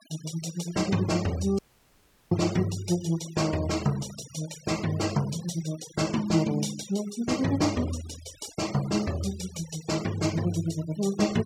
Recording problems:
noise reduction artefacts; signal-to-artefact ratio 15 dB
audio cutting out; at 1.5 s for 0.5 s

